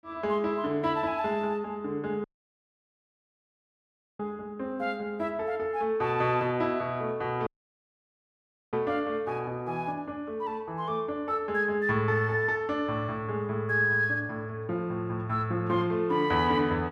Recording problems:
dropout; at 2 s for 2 s and at 7.5 s for 1.5 s

